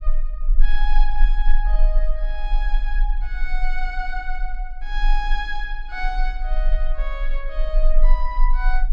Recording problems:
low-frequency rumble; below 30 Hz, strongest tone 20 Hz, SNR -6 dB

